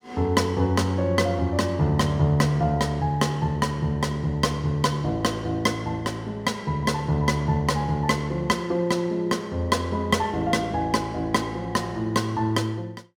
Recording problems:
none

